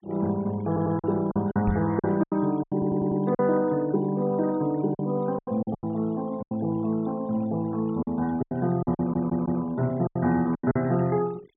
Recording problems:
treble cut off; nothing above 4 kHz
denoising artefacts; signal-to-artefact ratio 23 dB
packet loss; 10% of the sound replaced, filled with silence
stutter; at 0.5 s, at 2.5 s and at 9 s
microphone thump; at 1.5 s; peak +2 dB vs average level

